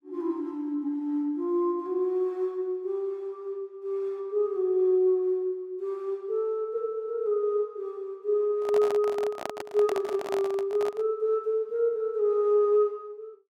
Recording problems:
handling noise; from 8.5 to 11 s; peak -2 dB vs average level

